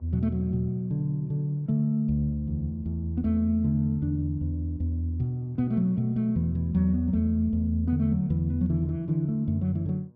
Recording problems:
mains hum; 60 Hz, harmonics up to 1.1 kHz, SNR 30 dB

